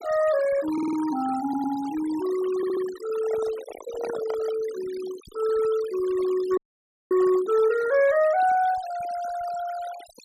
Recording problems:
denoising artefacts; signal-to-artefact ratio 16 dB
stutter; at 0.5 s, at 1.5 s and at 2.5 s
microphone handling noise; from 3 to 4.5 s; peak -5 dB vs average level
audio freezing; at 6.5 s for 0.5 s

